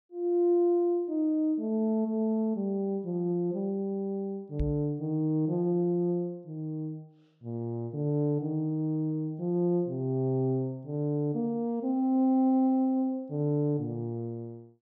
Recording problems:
microphone thump; at 4.5 s; peak 0 dB vs average level

